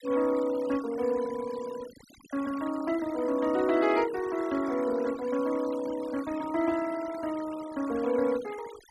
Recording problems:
noise reduction artefacts; signal-to-artefact ratio 17 dB

